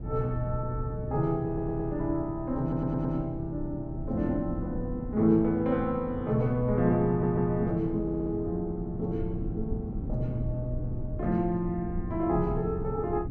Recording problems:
rumble; below 190 Hz, SNR 8 dB
audio stuttering; 4 times, first at 1.5 s

